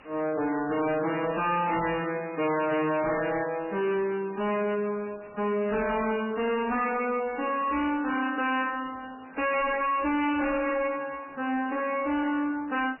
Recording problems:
codec artefacts; MP3, log-spectral distance 10 dB, nothing above 2.8 kHz
distortion; hard clipping, signal-to-distortion ratio 6 dB
hiss; SNR 24 dB

